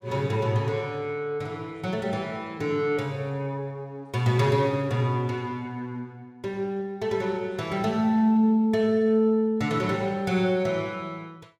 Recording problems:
none

